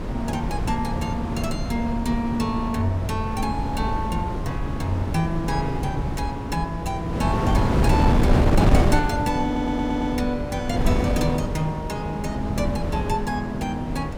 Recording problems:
wind on the microphone; below 290 Hz, SNR -1 dB
stutter; at 9.5 s

